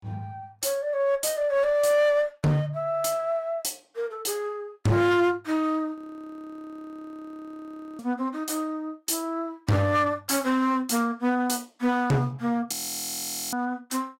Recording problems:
distortion; hard clipping, uneven, signal-to-distortion ratio 10 dB
audio freezing; at 6 s for 2 s and at 13 s for 1 s

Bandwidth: 16 kHz